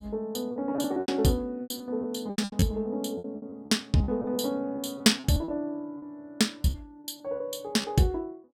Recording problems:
lost packets; 13% of the sound replaced, filled with repeated pitch periods

